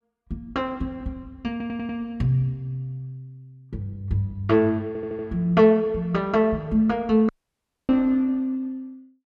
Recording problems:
audio stuttering; at 1.5 s and at 5 s
dropout; at 7.5 s for 0.5 s

